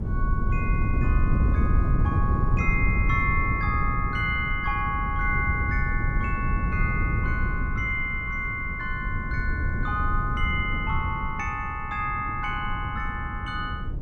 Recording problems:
wind on the microphone; below 120 Hz, SNR 0 dB

